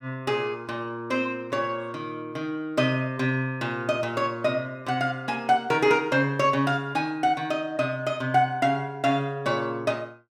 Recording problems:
none

